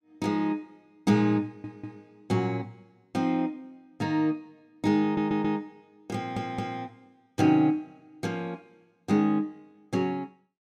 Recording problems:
stutter; at 1.5 s, at 5 s and at 6 s

